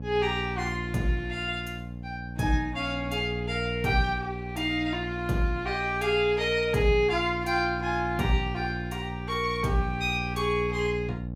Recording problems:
hum; 60 Hz, harmonics up to 780 Hz, SNR 8 dB

